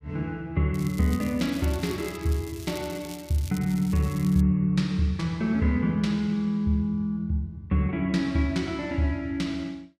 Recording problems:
crackle; from 0.5 to 4.5 s; loose cable, SNR 18 dB

